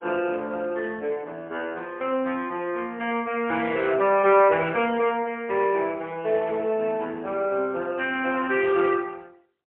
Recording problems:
phone line; 190 Hz to 3.3 kHz, AMR-NB, then MP3

